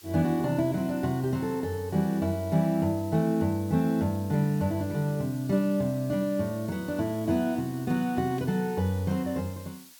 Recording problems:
hiss; slope +3 dB per octave, SNR 21 dB

